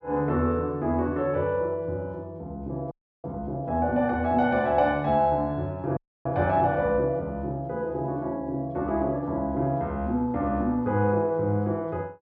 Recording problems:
audio freezing; at 3 s and at 6 s

